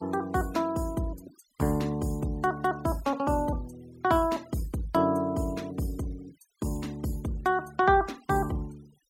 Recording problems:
noise reduction artefacts; signal-to-artefact ratio 24 dB

